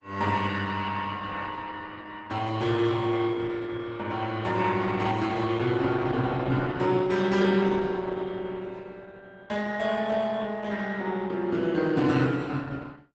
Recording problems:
lossy codec; Opus, log-spectral distance 4 dB, nothing above 8 kHz

